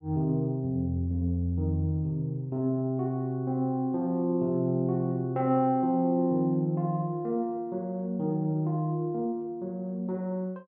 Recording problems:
none

